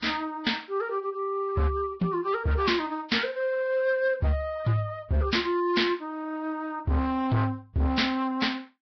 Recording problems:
lossy compression; Vorbis, log-spectral distance 3 dB, nothing above 5.5 kHz
distortion; hard clipping, signal-to-distortion ratio 11 dB

